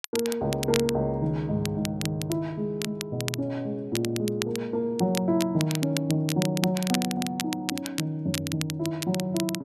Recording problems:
crackling; vinyl, SNR 7 dB

